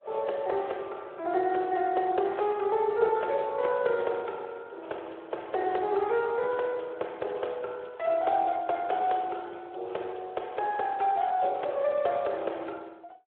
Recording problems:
telephone audio; 320 Hz to 3.6 kHz, Speex

